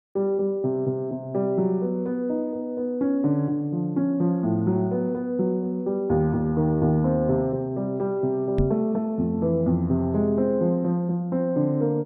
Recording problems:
knock on the microphone; at 8.5 s; peak +4 dB vs average level

